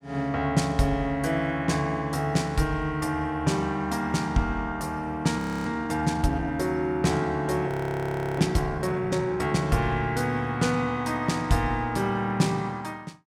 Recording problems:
frozen audio; at 5.5 s and at 7.5 s for 0.5 s

